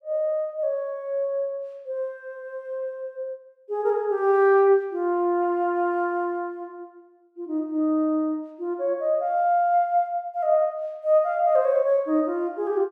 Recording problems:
none

